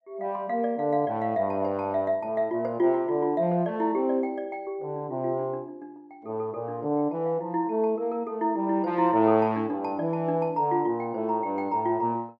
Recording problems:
none

